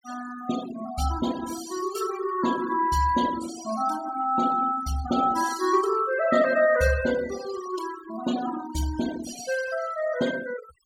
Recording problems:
denoising artefacts; signal-to-artefact ratio 12 dB

